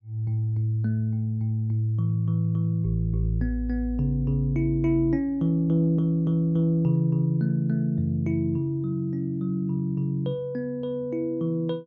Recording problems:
treble cut off; nothing above 8 kHz

